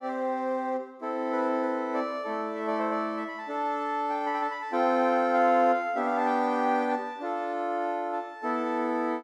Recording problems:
none

